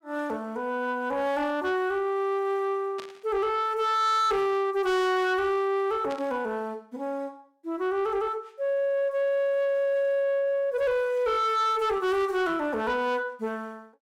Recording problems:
distortion; soft clipping, signal-to-distortion ratio 11 dB
static burst; at 3 s and at 6 s; peak -10 dB vs average level

